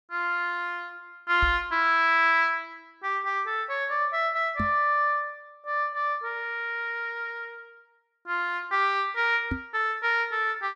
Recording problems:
microphone thump; at 1.5 s, at 4.5 s and at 9.5 s; peak -1 dB vs average level

